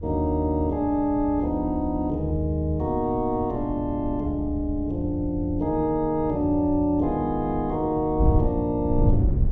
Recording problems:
wind noise; below 110 Hz, SNR 7 dB

